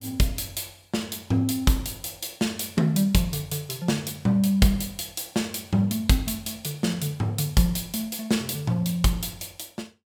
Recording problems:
none

